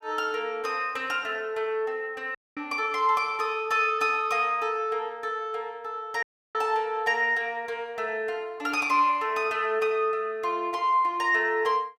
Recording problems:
audio cutting out; at 2.5 s and at 6 s

